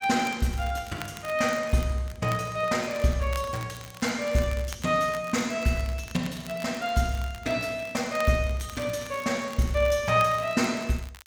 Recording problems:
crackle; vinyl, SNR 18 dB

